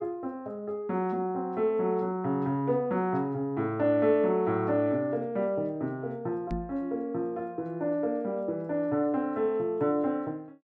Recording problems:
microphone thump; at 6.5 s; peak -1 dB vs average level

